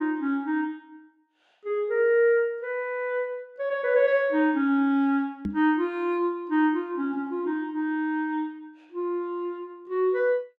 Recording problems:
microphone bump; at 5.5 s; peak -1 dB vs average level

